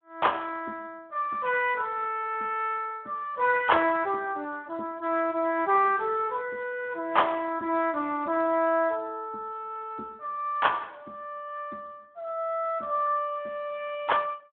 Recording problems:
phone line; 240 Hz to 3.4 kHz, Speex

